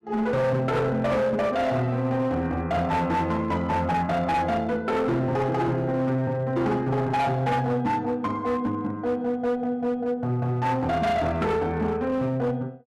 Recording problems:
distorted audio; hard clipping, signal-to-distortion ratio 10 dB

